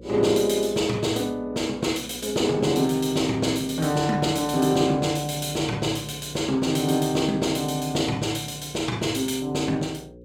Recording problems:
hum; 60 Hz, harmonics up to 540 Hz, SNR 20 dB

